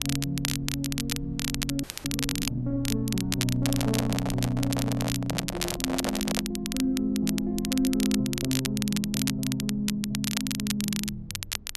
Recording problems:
rumble; below 78 Hz, SNR 16 dB
crackle; vinyl, SNR 4 dB
frozen audio; at 2 s
handling noise; from 3.5 to 6.5 s; peak +2 dB vs average level

